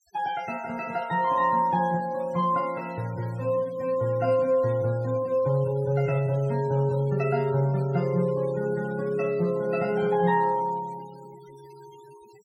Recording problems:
noise reduction artefacts; signal-to-artefact ratio 24 dB

